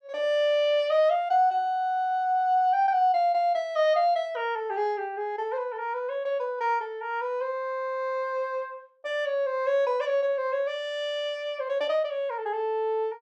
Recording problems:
none

